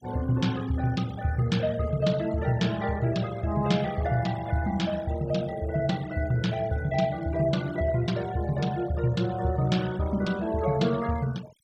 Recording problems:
noise reduction artefacts; signal-to-artefact ratio 19 dB

